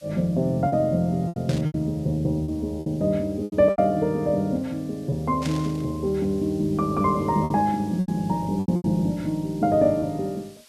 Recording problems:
hiss; slope +2 dB per octave, SNR 27 dB
lost packets; 8% of the sound replaced, filled with repeated pitch periods
static burst; at 1.5 s and at 5.5 s; peak -6 dB vs average level

